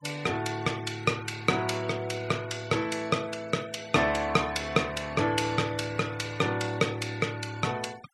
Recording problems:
noise reduction artefacts; signal-to-artefact ratio 20 dB

